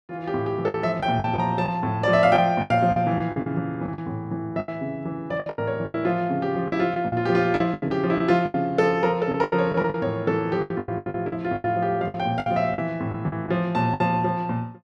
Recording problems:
lost packets; 13% of the sound replaced, filled with the last packet

